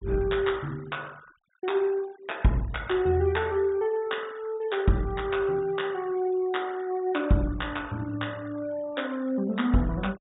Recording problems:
low-pass filter; nothing above 4 kHz
denoising artefacts; signal-to-artefact ratio 23 dB

